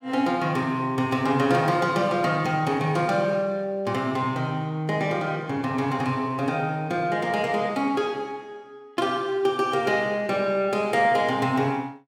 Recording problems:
none

